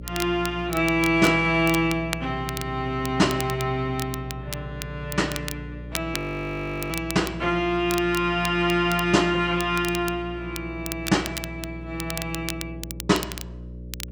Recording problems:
electrical hum; 60 Hz, harmonics up to 600 Hz, SNR 14 dB
crackling; vinyl, SNR 12 dB
audio freezing; at 6 s for 1 s

